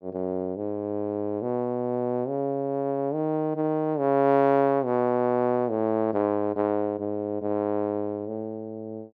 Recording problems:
none

